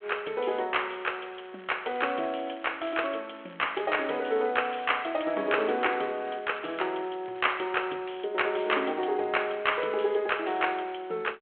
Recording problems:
telephone audio; 280 Hz to 3.4 kHz, G.726
crackling; from 1 to 3 s and from 3.5 to 8 s; loose cable, SNR 24 dB

